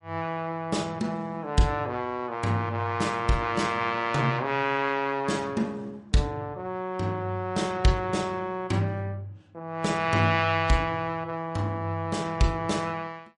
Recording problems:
codec artefacts; MP3, log-spectral distance 2 dB, nothing above 10.4 kHz

